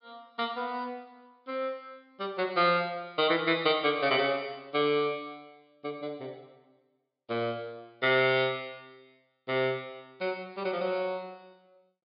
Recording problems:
treble missing; nothing above 5 kHz

